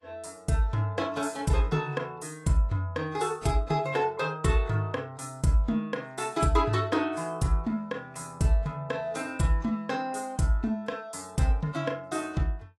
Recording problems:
lossy compression; AAC, log-spectral distance 2 dB, nothing above 11 kHz

